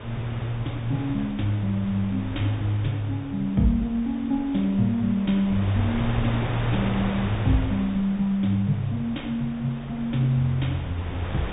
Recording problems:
low-pass filter; nothing above 3.7 kHz
wind on the microphone; below 990 Hz, SNR 10 dB

